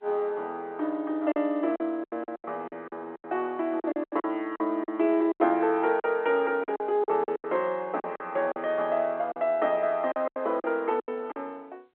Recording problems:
telephone audio; 280 Hz to 3.3 kHz, G.711
lost packets; 13% of the sound replaced, filled with silence

